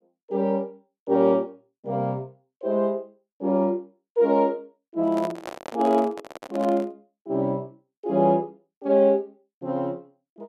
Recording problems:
microphone handling noise; from 5 to 7 s; peak -5 dB vs average level

